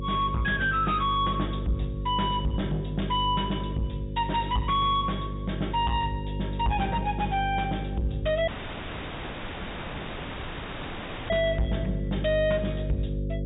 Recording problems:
treble cut off; nothing above 4 kHz
distortion; soft clipping, signal-to-distortion ratio 10 dB
hum; 50 Hz, harmonics up to 550 Hz, SNR 5 dB
audio cutting out; at 8.5 s for 3 s

